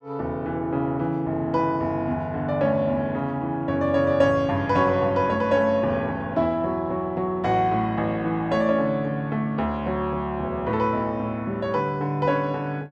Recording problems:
none

